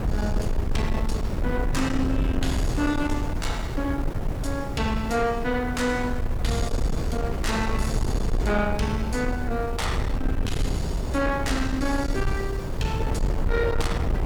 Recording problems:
distorted audio; soft clipping, signal-to-distortion ratio 11 dB
hiss; slope -1 dB per octave, SNR 25 dB
low-frequency rumble; below 130 Hz, SNR 1 dB
wind on the microphone; below 300 Hz, SNR 9 dB

